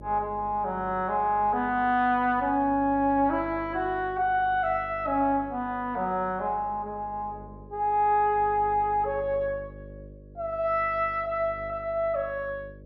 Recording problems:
hum; 50 Hz, harmonics up to 600 Hz, SNR 20 dB

